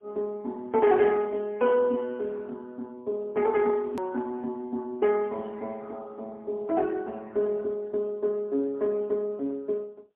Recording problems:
telephone audio; 240 Hz to 3 kHz, AMR-NB, then MP3
hard cut with a click; at 4 s

